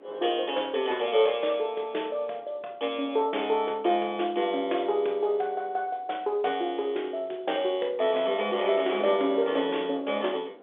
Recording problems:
phone line; 300 Hz to 3.6 kHz, G.711
wind on the microphone; below 660 Hz, SNR 18 dB

